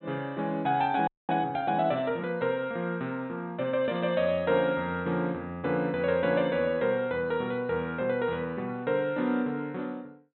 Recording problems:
treble cut off; nothing above 4 kHz
audio freezing; at 1 s
crackle; at 4 s; loose cable, SNR 27 dB

